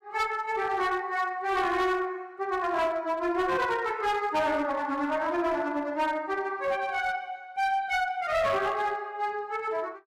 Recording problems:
distortion; hard clipping, uneven, signal-to-distortion ratio 12 dB

